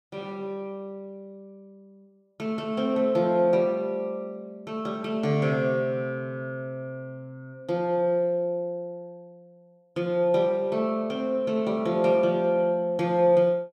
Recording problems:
none

